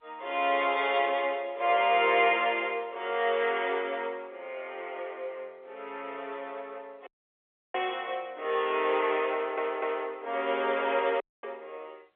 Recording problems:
telephone audio; 340 Hz to 3.6 kHz, G.711
dropout; at 7 s for 0.5 s and at 11 s
audio stuttering; at 9.5 s

